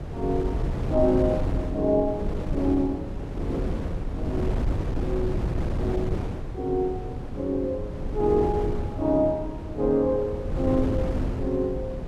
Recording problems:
wind on the microphone; below 220 Hz, SNR 4 dB

